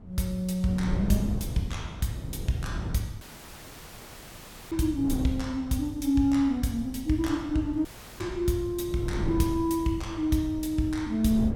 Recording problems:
wind noise; below 190 Hz, SNR 9 dB
audio cutting out; at 3 s for 1.5 s and at 8 s

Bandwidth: 18 kHz